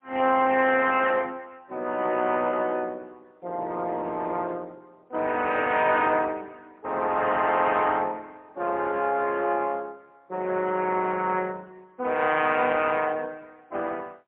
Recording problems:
telephone audio; 260 Hz to 3.1 kHz, AMR-NB, then MP3

